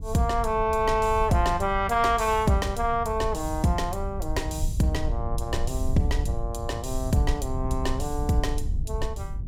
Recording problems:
low-frequency rumble; below 82 Hz, SNR 6 dB

